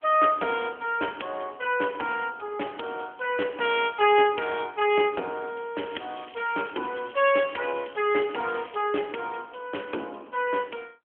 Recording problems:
telephone audio; 240 Hz to 3.3 kHz, AMR-NB
crackle; from 6 to 9 s; loose cable, SNR 21 dB

